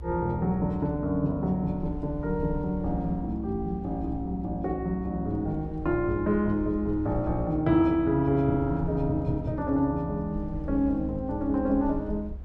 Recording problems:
low-frequency rumble; below 68 Hz, strongest tone 64 Hz, SNR 12 dB

